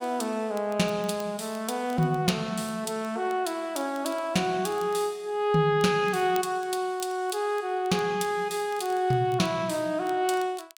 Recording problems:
crackling; vinyl, SNR 24 dB

